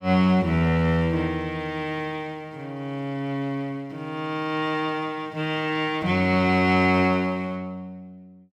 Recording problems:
none

